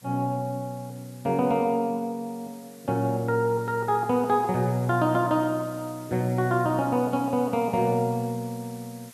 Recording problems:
background hiss; slope +2 dB per octave, SNR 23 dB

